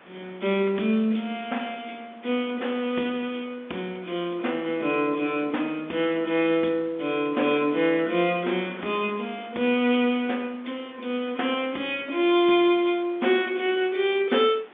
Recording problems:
phone line; 240 Hz to 3.6 kHz, G.711
wind on the microphone; below 2.2 kHz, SNR 24 dB

